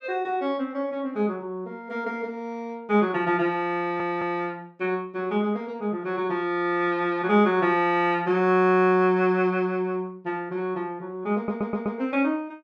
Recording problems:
audio stuttering; at 4 s and at 11 s

